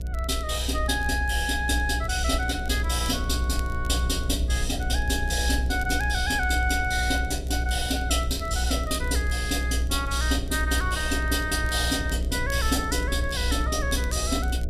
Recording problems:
mains hum; 60 Hz, harmonics up to 660 Hz, SNR 11 dB
rumble; below 64 Hz, strongest tone 62 Hz, SNR 3 dB
crackle; vinyl, SNR 22 dB

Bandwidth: 14 kHz